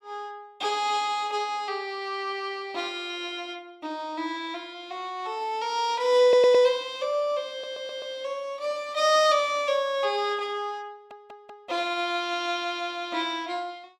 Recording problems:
audio stuttering; at 6 s, at 7.5 s and at 11 s

